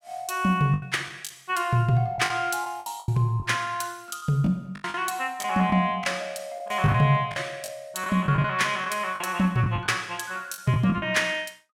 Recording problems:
lost packets; 10% of the sound replaced, filled with the last packet

